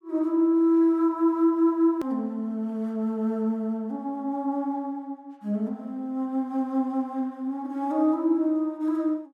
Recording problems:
click at an edit; at 2 s

